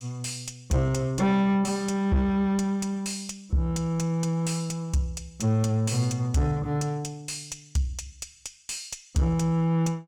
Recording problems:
distorted audio; soft clipping, signal-to-distortion ratio 11 dB

